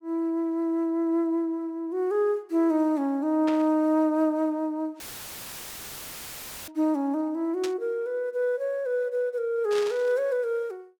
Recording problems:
static burst; at 3.5 s, at 7.5 s and at 9.5 s; peak -6 dB vs average level
dropout; at 5 s for 1.5 s; filled with static

